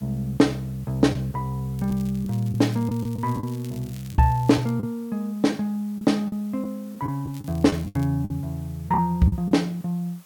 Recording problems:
hiss; slope -1 dB per octave, SNR 27 dB
packet loss; 6% of the sound replaced, filled with the last packet
crackle; from 2 to 4.5 s and at 7.5 s; loose cable, SNR 24 dB

